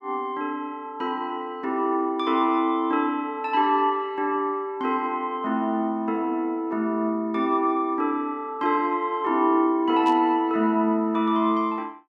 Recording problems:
burst of static; at 10 s; peak -14 dB vs average level

